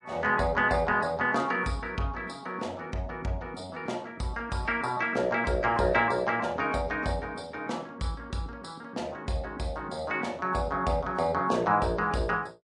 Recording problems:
lossy compression; MP3, log-spectral distance 2 dB, nothing above 9.2 kHz

